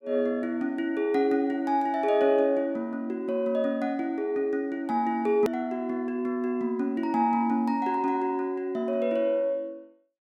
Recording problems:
edit click; at 5.5 s

